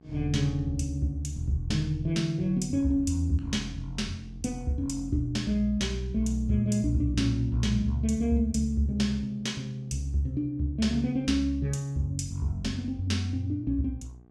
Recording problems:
electrical hum; 60 Hz, harmonics up to 1.3 kHz, SNR 29 dB

